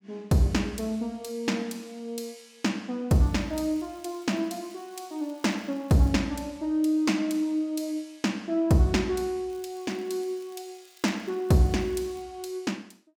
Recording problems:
crackling; from 3 to 6 s and from 9.5 to 12 s; loose cable, SNR 29 dB

